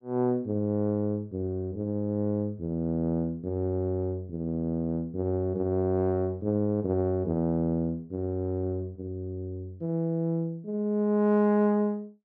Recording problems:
none

